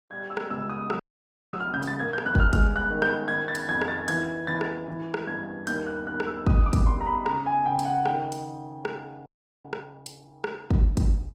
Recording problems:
lossy compression; Opus, log-spectral distance 2 dB, nothing above 18.3 kHz
audio freezing; at 1 s for 0.5 s and at 9.5 s

